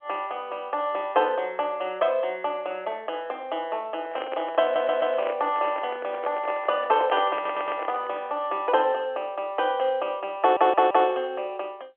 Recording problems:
phone line; 320 Hz to 3.2 kHz, G.711
microphone handling noise; from 4 to 8.5 s; peak -1 dB vs average level
audio stuttering; at 4.5 s, at 7.5 s and at 10 s

